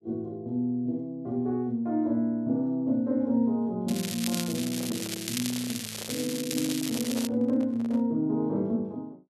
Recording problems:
crackle; from 4 to 7.5 s; loose cable, SNR 5 dB
microphone handling noise; from 4.5 to 8 s; peak -8 dB vs average level

